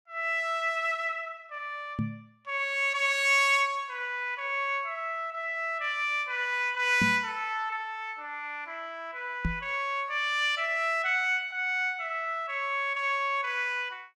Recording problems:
knock on the microphone; at 2 s, at 7 s and at 9.5 s; peak +2 dB vs average level

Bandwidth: 14.5 kHz